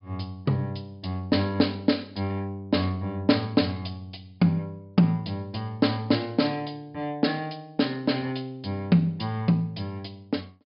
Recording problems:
low-pass filter; nothing above 5.5 kHz

